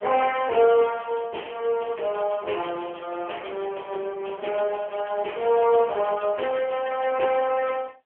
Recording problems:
telephone audio; 300 Hz to 2.7 kHz, AMR-NB

